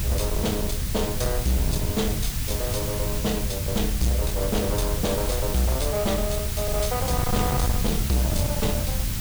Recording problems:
distortion; hard clipping, uneven, signal-to-distortion ratio 8 dB
background hiss; slope +2 dB per octave, SNR 4 dB
low-frequency rumble; below 70 Hz, strongest tone 42 Hz, SNR 6 dB
wind noise; below 140 Hz, SNR 3 dB

